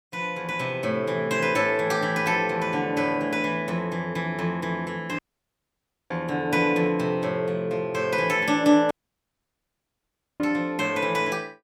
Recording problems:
dropout; at 5 s for 1 s and at 9 s for 1.5 s

